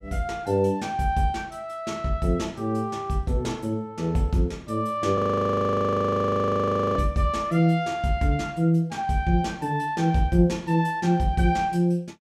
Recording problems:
frozen audio; at 5 s for 2 s

